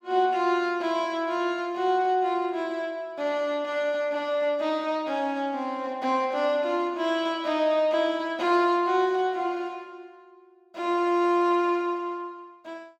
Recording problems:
none

